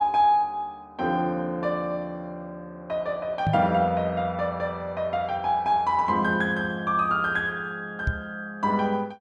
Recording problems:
microphone bump; at 3.5 s and at 8 s; peak +3 dB vs average level

